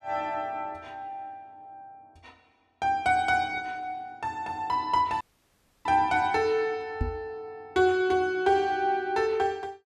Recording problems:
audio cutting out; at 5 s for 0.5 s
knock on the microphone; at 7 s; peak +2 dB vs average level

